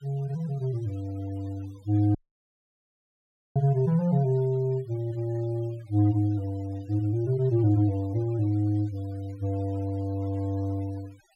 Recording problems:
denoising artefacts; signal-to-artefact ratio 27 dB
dropout; at 2 s for 1.5 s

